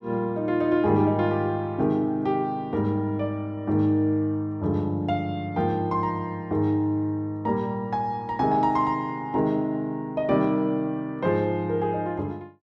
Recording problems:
none

